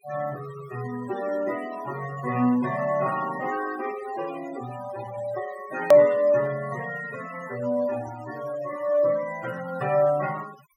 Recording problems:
noise reduction artefacts; signal-to-artefact ratio 14 dB
edit click; at 6 s

